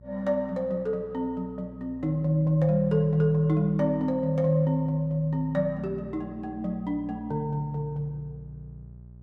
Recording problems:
hum; 60 Hz, harmonics up to 420 Hz, SNR 20 dB

